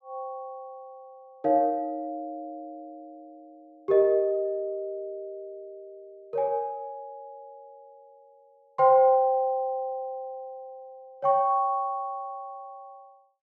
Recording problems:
none

